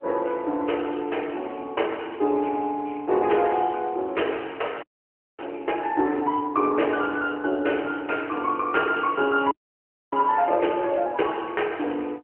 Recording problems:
phone line; 260 Hz to 3.1 kHz, AMR-NB
audio freezing; at 5 s for 0.5 s and at 9.5 s for 0.5 s

